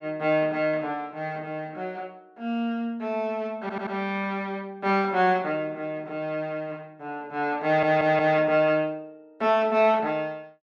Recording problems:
audio stuttering; at 3.5 s and at 7.5 s

